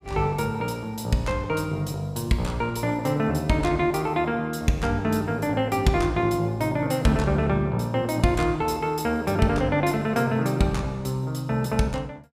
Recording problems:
none

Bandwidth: 15.5 kHz